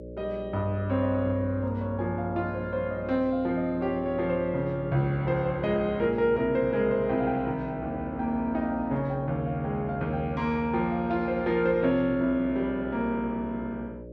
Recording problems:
mains hum; 60 Hz, harmonics up to 600 Hz, SNR 14 dB

